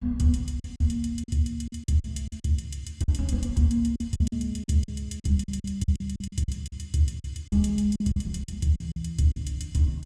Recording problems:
packet loss; 12% of the sound replaced, filled with silence

